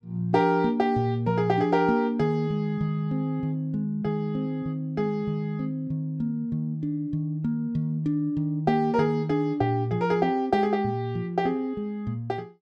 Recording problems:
none

